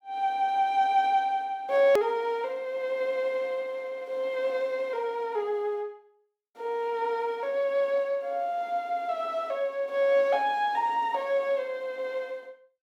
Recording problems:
hard cut with a click; at 2 s

